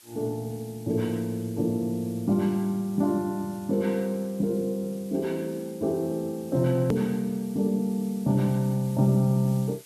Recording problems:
hiss; slope +2 dB per octave, SNR 23 dB
hard cut with a click; at 7 s

